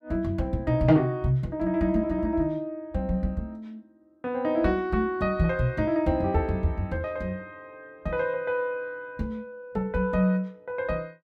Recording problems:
none

